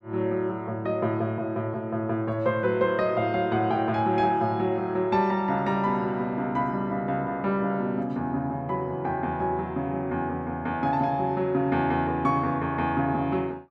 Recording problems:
none

